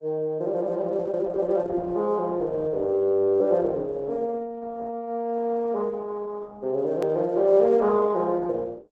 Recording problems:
lossy compression; Opus, log-spectral distance 2 dB, nothing above 13.1 kHz
hard cut with a click; at 7 s

